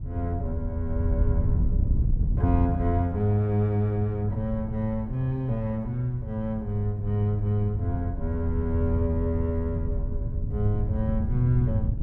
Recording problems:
wind noise; below 110 Hz, SNR 4 dB

